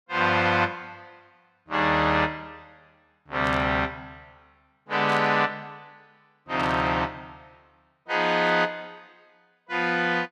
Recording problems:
burst of static; 4 times, first at 3.5 s; peak -11 dB vs average level

